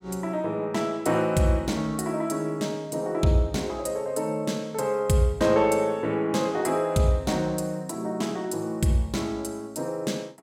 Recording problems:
none

